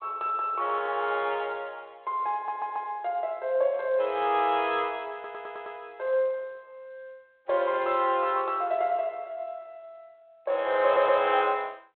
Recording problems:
phone line; 340 Hz to 3.6 kHz, G.726
stutter; at 2.5 s, at 5 s and at 11 s

